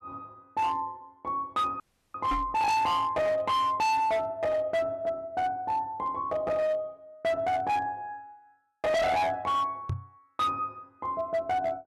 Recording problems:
distorted audio; hard clipping, signal-to-distortion ratio 6 dB
dropout; at 2 s
knock on the microphone; at 2.5 s and at 10 s; peak 0 dB vs average level

